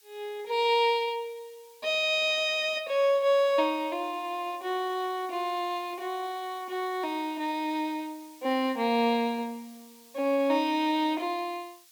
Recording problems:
background hiss; slope +4 dB per octave, SNR 25 dB

